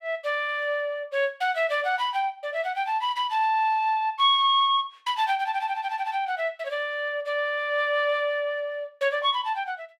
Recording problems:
none

